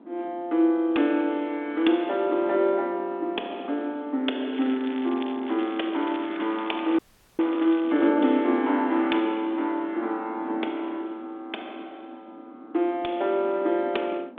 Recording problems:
phone line; 220 Hz to 3.6 kHz, G.726
wind on the microphone; below 360 Hz, SNR 20 dB
crackle; from 4.5 to 8 s; loose cable, SNR 19 dB
audio freezing; at 7 s

